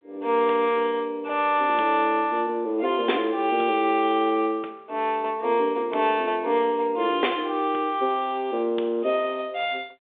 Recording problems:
telephone audio; 280 Hz to 3.7 kHz, G.726

